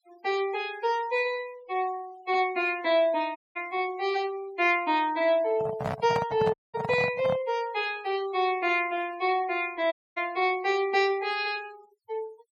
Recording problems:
denoising artefacts; signal-to-artefact ratio 20 dB
audio cutting out; at 3.5 s, at 6.5 s and at 10 s
microphone handling noise; from 5.5 to 7.5 s; peak 0 dB vs average level

